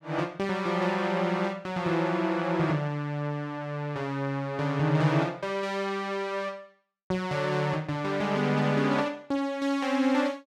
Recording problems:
none

